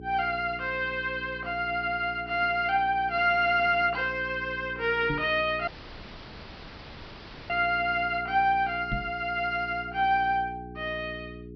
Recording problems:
treble missing; nothing above 5.5 kHz
electrical hum; 60 Hz, harmonics up to 420 Hz, SNR 17 dB
microphone thump; at 5 s and at 9 s; peak -2 dB vs average level
audio cutting out; at 5.5 s for 2 s

